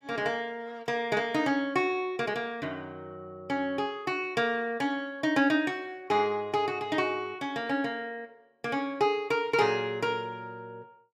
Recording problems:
none

